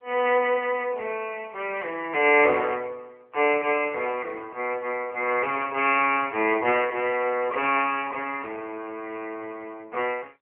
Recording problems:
phone line; 340 Hz to 3.2 kHz, AMR-NB

